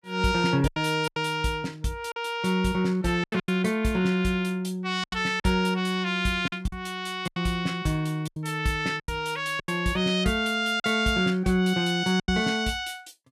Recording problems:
packet loss; 8% of the sound replaced, filled with silence

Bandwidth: 14.5 kHz